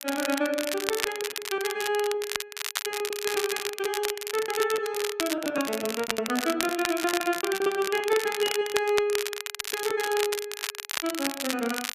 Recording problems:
crackle; vinyl, SNR 4 dB
lost packets; 15% of the sound replaced, filled with repeated pitch periods

